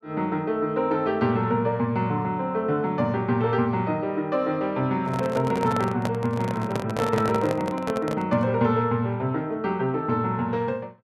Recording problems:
handling noise; from 5 to 8.5 s; peak 0 dB vs average level

